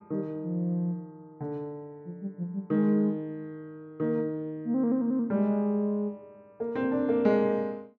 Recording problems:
none

